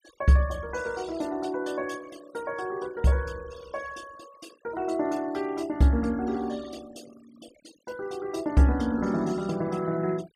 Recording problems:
denoising artefacts; signal-to-artefact ratio 23 dB

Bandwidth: 15 kHz